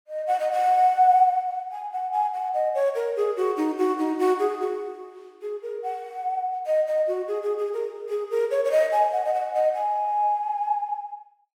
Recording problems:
none

